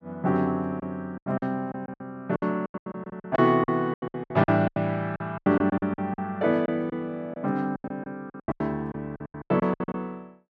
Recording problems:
lost packets; 19% of the sound replaced, filled with silence

